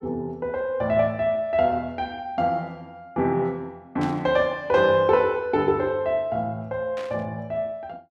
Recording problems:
static burst; at 4 s and at 7 s; peak -12 dB vs average level

